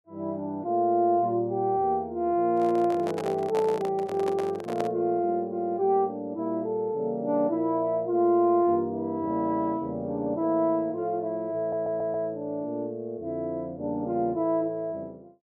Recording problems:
microphone handling noise; from 2.5 to 5 s; peak -3 dB vs average level
audio stuttering; at 12 s

